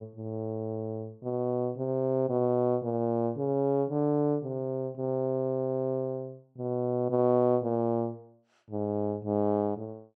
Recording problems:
none

